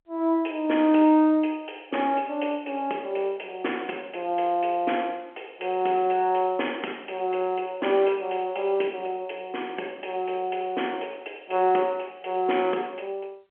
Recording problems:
phone line; 260 Hz to 3.3 kHz, G.711

